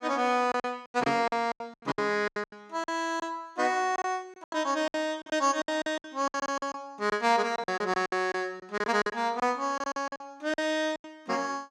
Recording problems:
lost packets; 16% of the sound replaced, filled with silence

